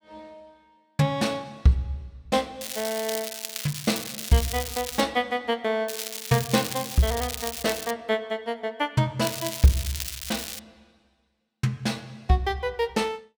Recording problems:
crackling; from 2.5 to 5 s, from 6 to 8 s and from 9 to 11 s; loose cable, SNR 6 dB

